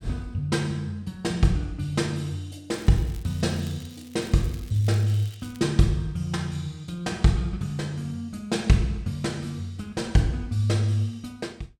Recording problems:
crackle; from 2.5 to 5.5 s; loose cable, SNR 23 dB

